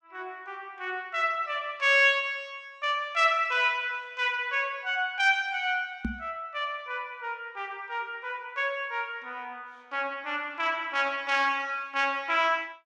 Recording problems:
microphone thump; at 6 s; peak 0 dB vs average level

